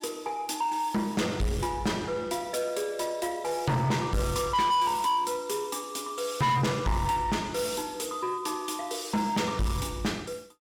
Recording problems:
distorted audio; soft clipping, signal-to-distortion ratio 7 dB

